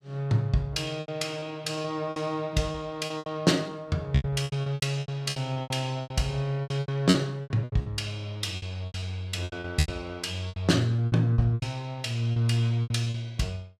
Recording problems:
packet loss; 16% of the sound replaced, filled with repeated pitch periods

